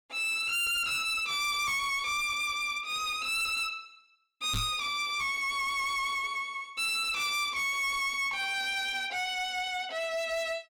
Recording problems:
distorted audio; hard clipping, uneven, signal-to-distortion ratio 6 dB
microphone bump; at 4.5 s; peak +2 dB vs average level

